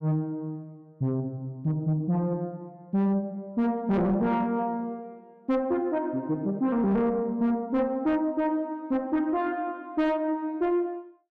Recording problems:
distortion; soft clipping, signal-to-distortion ratio 10 dB

